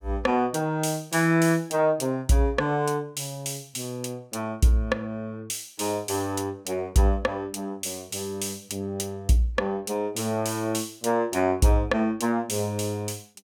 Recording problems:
none

